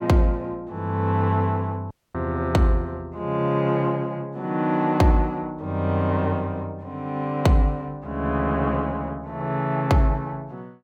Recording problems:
dropout; at 2 s

